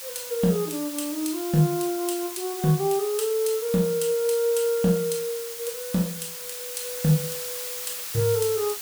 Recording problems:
background hiss; slope +3 dB per octave, SNR 8 dB

